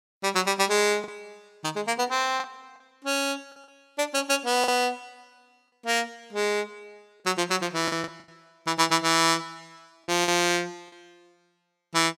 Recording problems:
packet loss; 4% of the sound replaced, filled with the last packet

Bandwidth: 16.5 kHz